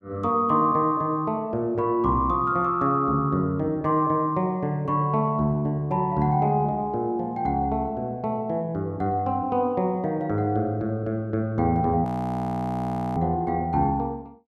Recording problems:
audio freezing; at 12 s for 1 s

